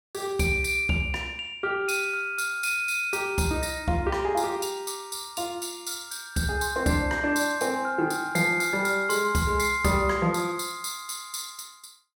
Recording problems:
none

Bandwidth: 16.5 kHz